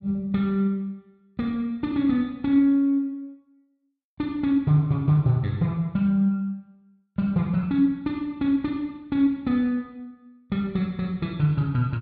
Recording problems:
none

